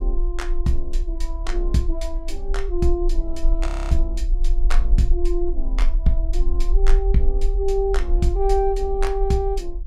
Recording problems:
rumble; below 38 Hz, strongest tone 18 Hz, SNR 0 dB
audio freezing; at 3.5 s

